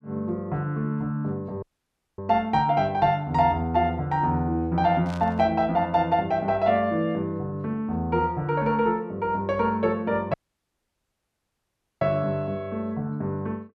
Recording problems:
audio cutting out; at 1.5 s for 0.5 s and at 10 s for 1.5 s
burst of static; at 5 s; peak -14 dB vs average level

